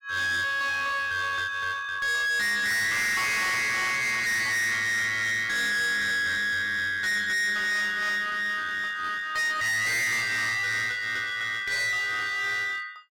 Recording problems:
distortion; hard clipping, uneven, signal-to-distortion ratio 6 dB

